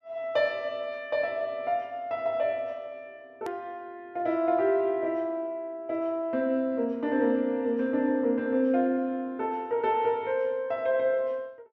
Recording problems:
click at an edit; at 3.5 s

